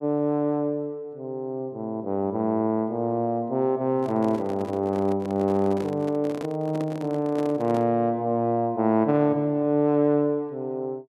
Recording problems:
microphone handling noise; from 4 to 8 s; peak -7 dB vs average level

